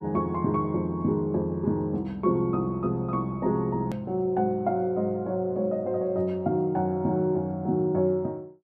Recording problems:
edit click; at 4 s

